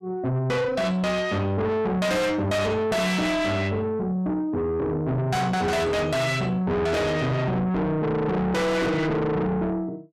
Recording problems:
distorted audio; soft clipping, signal-to-distortion ratio 6 dB

